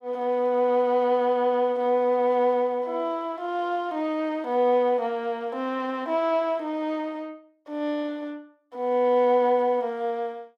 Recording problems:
none

